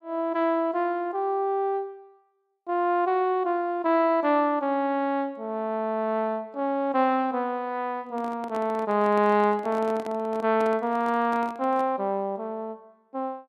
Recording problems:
microphone handling noise; from 8 to 12 s; peak -9 dB vs average level

